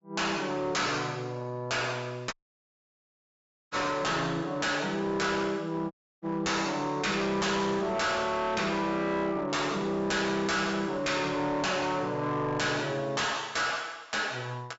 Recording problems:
treble missing; nothing above 8 kHz
distorted audio; hard clipping, signal-to-distortion ratio 6 dB
audio cutting out; at 2.5 s for 1.5 s and at 6 s

